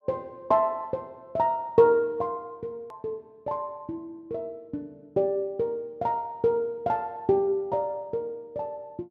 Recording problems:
edit click; at 3 s

